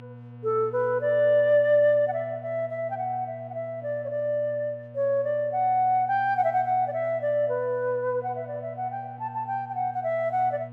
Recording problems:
hum; 60 Hz, harmonics up to 960 Hz, SNR 19 dB

